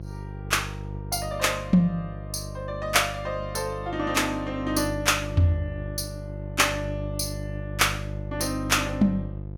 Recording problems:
electrical hum; 50 Hz, harmonics up to 700 Hz, SNR 9 dB

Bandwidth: 18 kHz